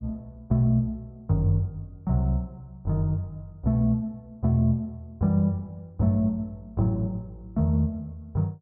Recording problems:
none

